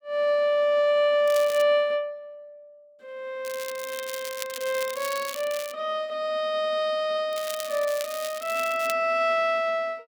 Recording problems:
crackling; at 1.5 s, from 3.5 to 5.5 s and from 7.5 to 9 s; loose cable, SNR 12 dB

